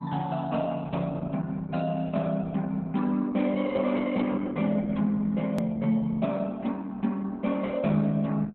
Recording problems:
lossy compression; Opus, log-spectral distance 3 dB, nothing above 13.1 kHz
click at an edit; at 5.5 s

